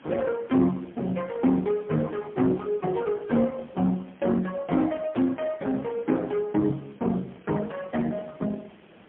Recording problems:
phone line; 130 Hz to 2.8 kHz, AMR-NB, then MP3
background hiss; SNR 25 dB

